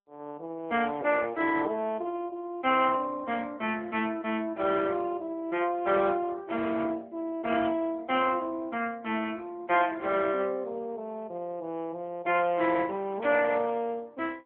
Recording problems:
telephone audio; 190 Hz to 3.3 kHz, AMR-NB

